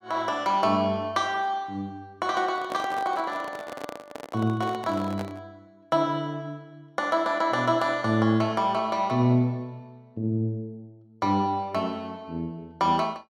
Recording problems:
handling noise; from 2.5 to 5.5 s; peak -5 dB vs average level

